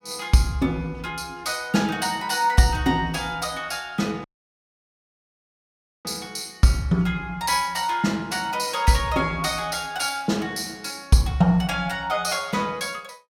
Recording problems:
dropout; at 4 s for 2 s

